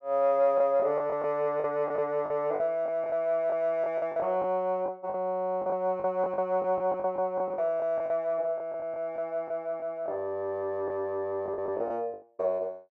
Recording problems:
lost packets; 11% of the sound replaced, filled with the last packet

